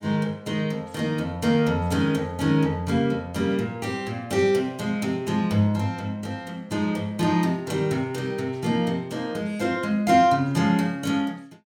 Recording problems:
none

